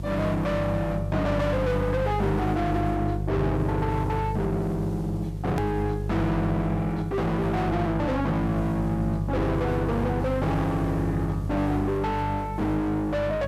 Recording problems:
distorted audio; soft clipping, signal-to-distortion ratio 5 dB
electrical hum; 50 Hz, harmonics up to 550 Hz, SNR 4 dB
hiss; slope -5 dB per octave, SNR 24 dB
edit click; at 5.5 s

